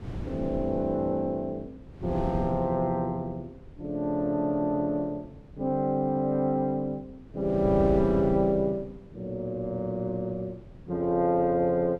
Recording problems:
wind on the microphone; below 230 Hz, SNR 14 dB

